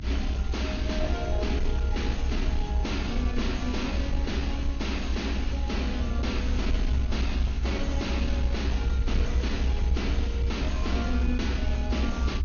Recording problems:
low-pass filter; nothing above 6.7 kHz
codec artefacts; AAC, log-spectral distance 3 dB
distorted audio; soft clipping, signal-to-distortion ratio 10 dB
rumble; below 66 Hz, strongest tone 62 Hz, SNR -3 dB

